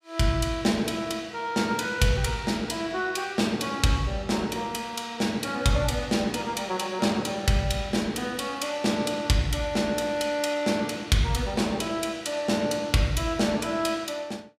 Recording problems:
none

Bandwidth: 15.5 kHz